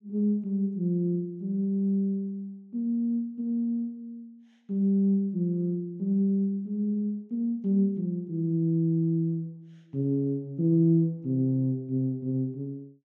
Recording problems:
none

